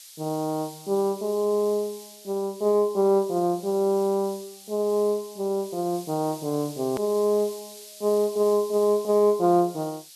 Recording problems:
hiss; SNR 19 dB
click at an edit; at 7 s

